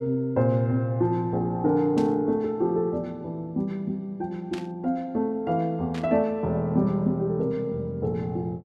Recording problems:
burst of static; at 2 s, at 4.5 s and at 6 s; peak -9 dB vs average level

